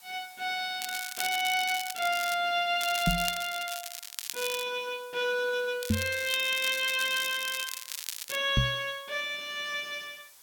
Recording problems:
hiss; SNR 23 dB
crackle; from 1 to 2.5 s, from 3 to 4.5 s and from 6 to 8.5 s; loose cable, SNR 7 dB
knock on the microphone; at 3 s, at 6 s and at 8.5 s; peak +6 dB vs average level

